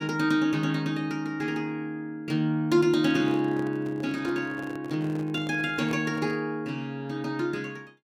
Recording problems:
microphone handling noise; from 3 to 6.5 s; peak -7 dB vs average level

